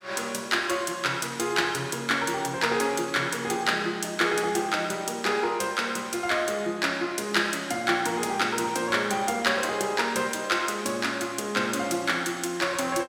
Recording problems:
none

